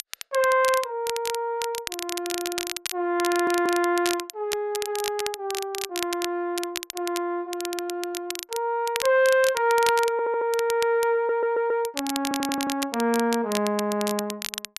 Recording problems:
crackling; vinyl, SNR 8 dB
stutter; 4 times, first at 3.5 s

